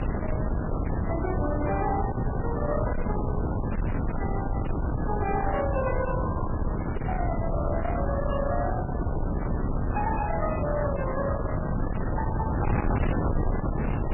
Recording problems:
codec artefacts; MP3, log-spectral distance 4 dB, nothing above 2.6 kHz
distortion; soft clipping, signal-to-distortion ratio 8 dB
wind noise; below 370 Hz, SNR -1 dB

